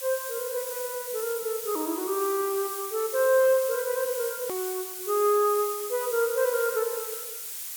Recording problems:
hiss; slope +3 dB per octave, SNR 7 dB
hard cut with a click; at 4.5 s

